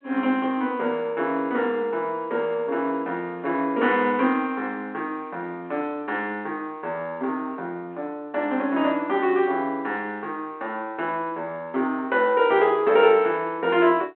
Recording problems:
telephone audio; 220 Hz to 3.5 kHz, G.726

